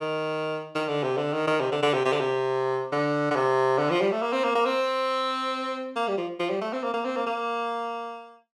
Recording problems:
none

